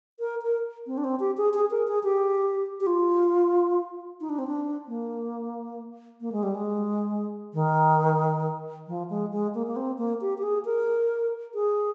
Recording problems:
treble missing; nothing above 8 kHz

